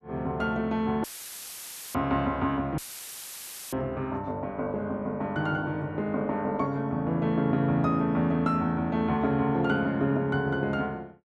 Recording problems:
audio cutting out; at 1 s for 1 s and at 3 s for 1 s; filled with static

